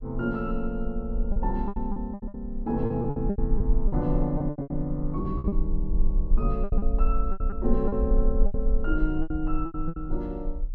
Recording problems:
rumble; below 42 Hz, strongest tone 18 Hz, SNR 1 dB
packet loss; 13% of the sound replaced, filled with repeated pitch periods

